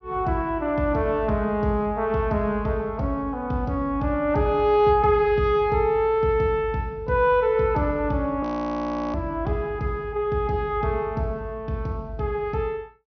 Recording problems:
treble missing; nothing above 6.1 kHz
audio freezing; at 8.5 s for 0.5 s

